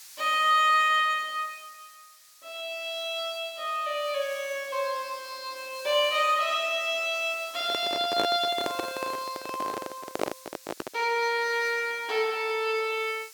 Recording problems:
background hiss; slope +5 dB per octave, SNR 20 dB
handling noise; from 7.5 to 11 s; peak +3 dB vs average level

